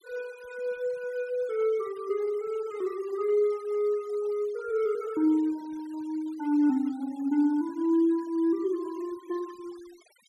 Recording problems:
noise reduction artefacts; signal-to-artefact ratio 26 dB

